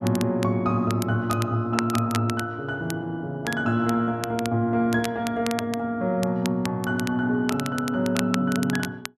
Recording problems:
crackling; vinyl, SNR 12 dB

